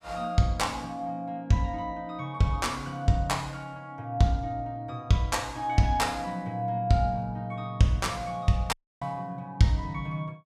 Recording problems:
dropout; at 8.5 s

